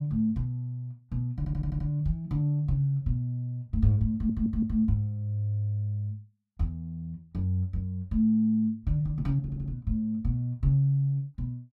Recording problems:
audio stuttering; at 1.5 s, at 4 s and at 9.5 s

